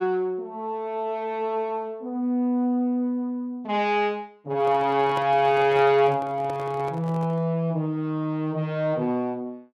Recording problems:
handling noise; from 4.5 to 7.5 s; peak -6 dB vs average level

